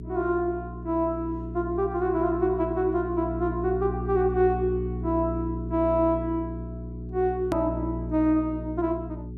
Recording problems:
hum; 60 Hz, harmonics up to 420 Hz, SNR 8 dB
edit click; at 7.5 s

